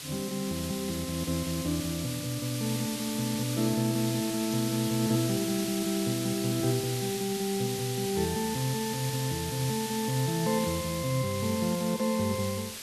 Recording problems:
background hiss; SNR 6 dB

